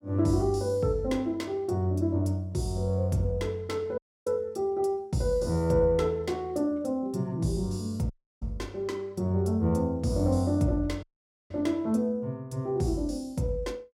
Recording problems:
audio cutting out; at 4 s, at 8 s and at 11 s

